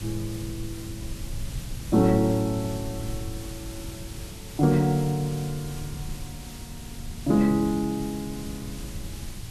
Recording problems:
background hiss; slope -1 dB per octave, SNR 16 dB
low-frequency rumble; below 120 Hz, SNR 14 dB

